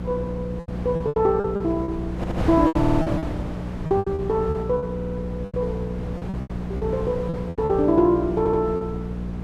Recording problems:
hum; 60 Hz, harmonics up to 480 Hz, SNR 7 dB
wind on the microphone; below 470 Hz, SNR 9 dB
lost packets; 13% of the sound replaced, filled with repeated pitch periods
stutter; 4 times, first at 2 s

